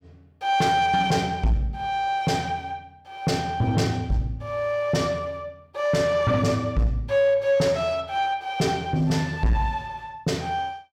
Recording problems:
distortion; soft clipping, signal-to-distortion ratio 11 dB

